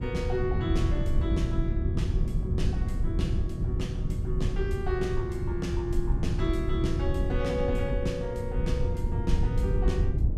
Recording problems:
rumble; below 110 Hz, SNR -3 dB

